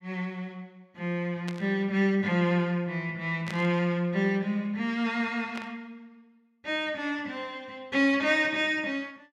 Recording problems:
static burst; at 1.5 s, at 3.5 s and at 5.5 s; peak -7 dB vs average level

